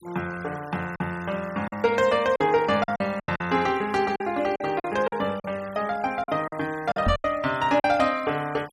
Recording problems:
denoising artefacts; signal-to-artefact ratio 20 dB
lost packets; 9% of the sound replaced, filled with silence
knock on the microphone; at 7 s; peak +3 dB vs average level

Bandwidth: 14.5 kHz